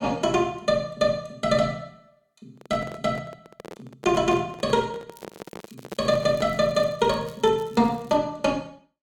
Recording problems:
handling noise; from 2.5 to 6.5 s; peak -6 dB vs average level
crackle; from 5 to 8 s; loose cable, SNR 29 dB

